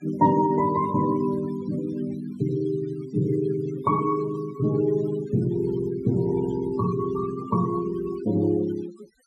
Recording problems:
noise reduction artefacts; signal-to-artefact ratio 17 dB

